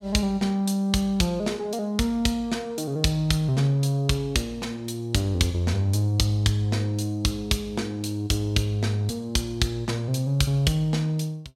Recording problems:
none

